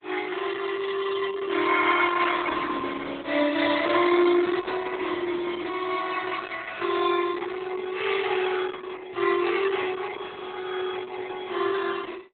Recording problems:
codec artefacts; Opus, log-spectral distance 6 dB, nothing above 3.9 kHz

